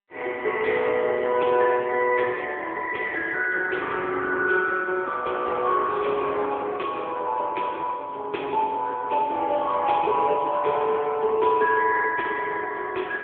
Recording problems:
telephone audio; 320 Hz to 3.4 kHz, AMR-NB

